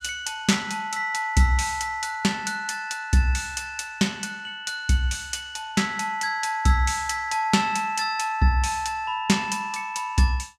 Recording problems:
none

